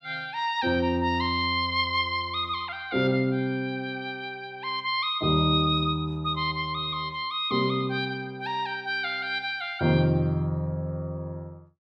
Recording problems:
none

